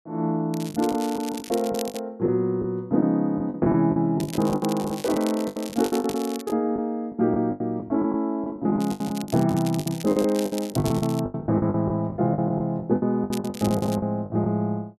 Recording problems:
packet loss; 17% of the sound replaced, filled with the last packet
crackling; 4 times, first at 0.5 s; loose cable, SNR 14 dB

